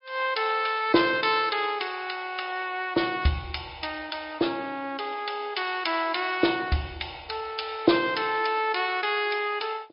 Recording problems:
treble cut off; nothing above 5.2 kHz
lossy codec; MP3, log-spectral distance 4 dB

